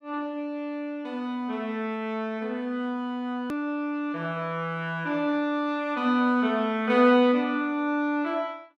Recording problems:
edit click; at 3.5 s

